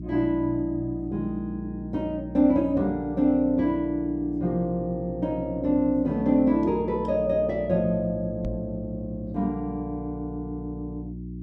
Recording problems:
electrical hum; 60 Hz, harmonics up to 360 Hz, SNR 11 dB
microphone bump; at 8.5 s; peak -1 dB vs average level

